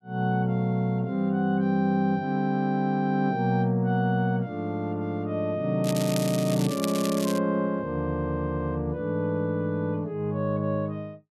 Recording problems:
crackling; from 6 to 7.5 s; loose cable, SNR 10 dB

